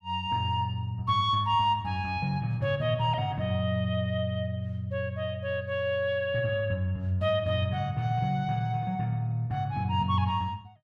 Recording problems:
none

